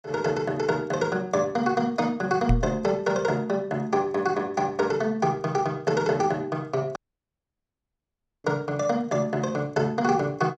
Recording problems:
microphone bump; at 2.5 s; peak +6 dB vs average level
audio cutting out; at 7 s for 1.5 s

